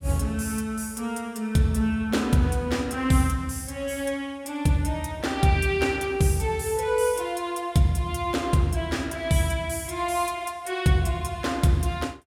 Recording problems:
none

